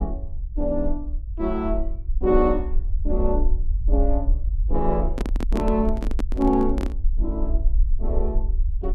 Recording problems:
low-frequency rumble; below 50 Hz, SNR 1 dB
handling noise; from 5 to 7 s; peak +2 dB vs average level

